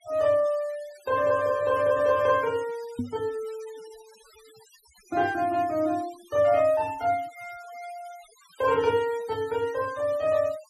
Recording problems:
noise reduction artefacts; signal-to-artefact ratio 22 dB
microphone thump; at 3 s; peak -1 dB vs average level

